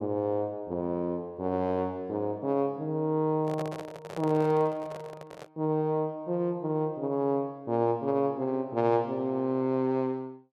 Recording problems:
handling noise; from 3.5 to 5.5 s; peak -6 dB vs average level

